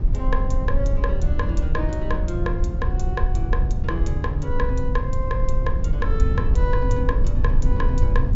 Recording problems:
treble missing; nothing above 7.3 kHz
low-frequency rumble; below 68 Hz, SNR -5 dB

